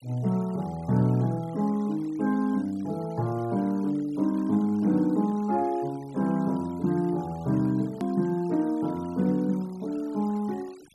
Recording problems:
denoising artefacts; signal-to-artefact ratio 25 dB
hard cut with a click; at 8 s

